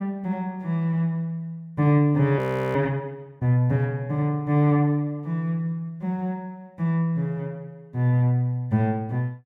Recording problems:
frozen audio; at 2.5 s

